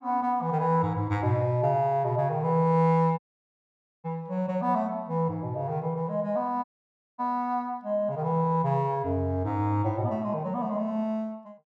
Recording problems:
dropout; at 3 s for 1 s and at 6.5 s for 0.5 s

